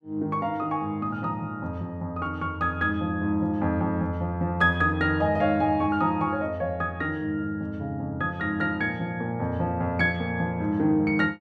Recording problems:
none

